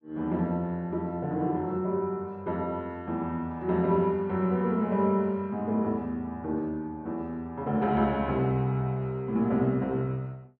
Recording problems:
none

